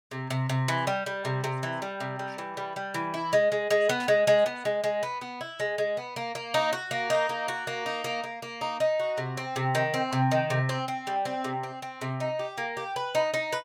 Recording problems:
static burst; at 4 s and at 7 s; peak -10 dB vs average level

